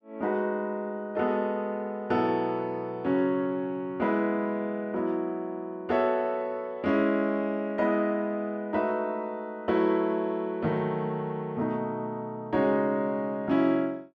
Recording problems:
none

